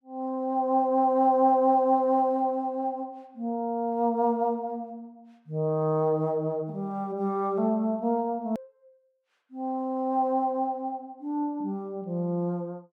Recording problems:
edit click; at 8.5 s

